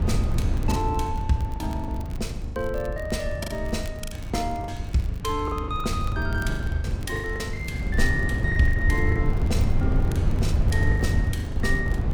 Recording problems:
low-frequency rumble; below 110 Hz, SNR -2 dB
crackle; vinyl, SNR 22 dB
lost packets; 12% of the sound replaced, filled with the last packet

